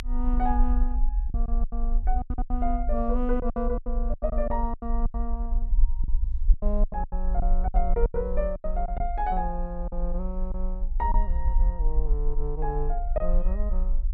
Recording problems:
low-frequency rumble; below 46 Hz, strongest tone 26 Hz, SNR -3 dB
lost packets; 11% of the sound replaced, filled with silence

